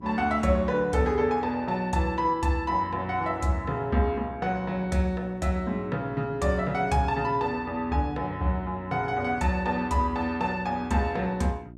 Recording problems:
mains hum; 60 Hz, harmonics up to 720 Hz, SNR 19 dB

